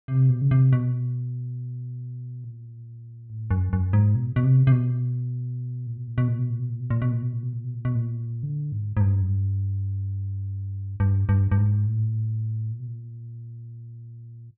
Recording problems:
low-pass filter; nothing above 4.7 kHz

